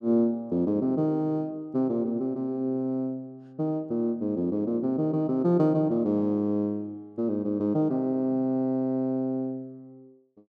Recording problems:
none

